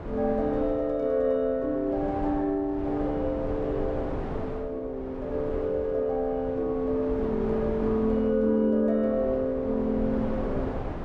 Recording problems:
wind noise; below 550 Hz, SNR 9 dB

